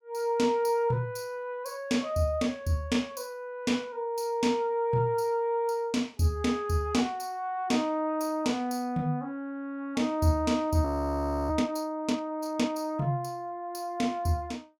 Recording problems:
audio freezing; at 11 s for 0.5 s

